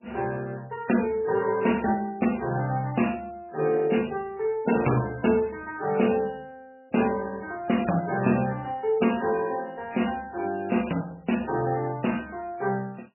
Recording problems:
codec artefacts; MP3, log-spectral distance 5 dB, nothing above 2.8 kHz

